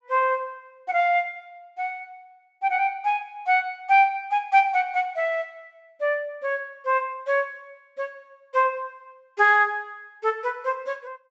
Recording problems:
treble cut off; nothing above 8 kHz

